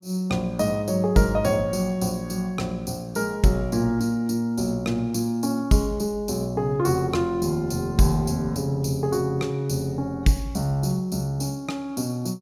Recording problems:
none

